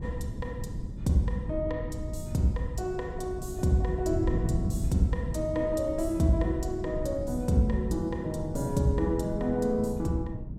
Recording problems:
wind on the microphone; below 160 Hz, SNR 6 dB

